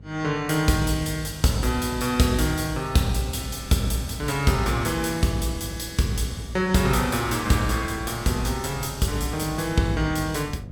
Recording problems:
electrical hum; 50 Hz, harmonics up to 450 Hz, SNR 19 dB
wind on the microphone; below 370 Hz, SNR 21 dB

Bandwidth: 17.5 kHz